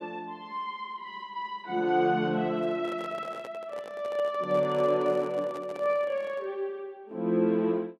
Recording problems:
microphone handling noise; from 2.5 to 6.5 s; peak -9 dB vs average level

